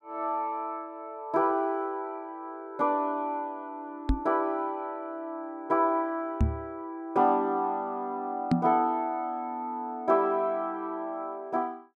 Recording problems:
knock on the microphone; at 4 s, at 6.5 s and at 8.5 s; peak +8 dB vs average level

